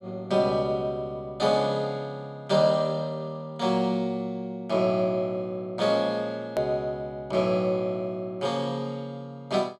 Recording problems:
hard cut with a click; at 6.5 s

